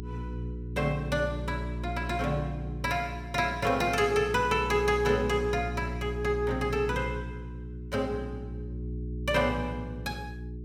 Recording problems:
hum; 60 Hz, harmonics up to 420 Hz, SNR 8 dB

